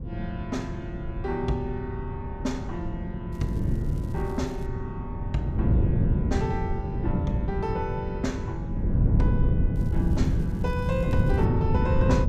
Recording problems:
wind noise; below 160 Hz, SNR -4 dB
crackle; from 3.5 to 4.5 s and from 10 to 11 s; loose cable, SNR 25 dB

